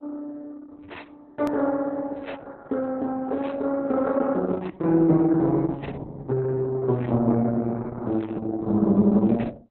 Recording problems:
lossy compression; AAC, then Opus, log-spectral distance 3 dB, nothing above 13.3 kHz
hard cut with a click; at 1.5 s

